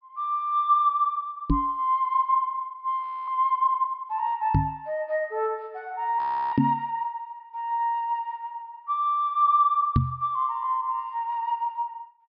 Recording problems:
treble cut off; nothing above 5.5 kHz
microphone bump; 4 times, first at 1.5 s; peak +7 dB vs average level
frozen audio; at 3 s and at 6 s

